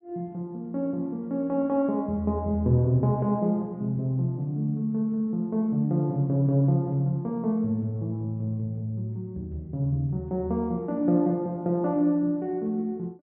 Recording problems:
treble cut off; nothing above 3.5 kHz

